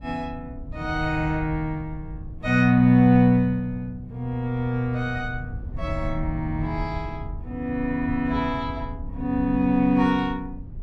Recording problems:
wind noise; below 110 Hz, SNR 13 dB

